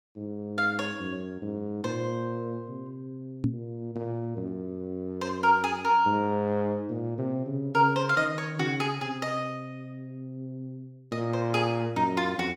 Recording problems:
knock on the microphone; at 3.5 s; peak +5 dB vs average level

